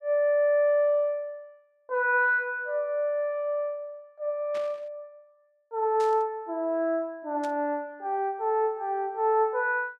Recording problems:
static burst; at 4.5 s, at 6 s and at 7.5 s; peak -13 dB vs average level

